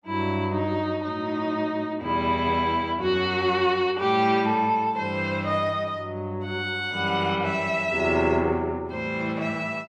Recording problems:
none

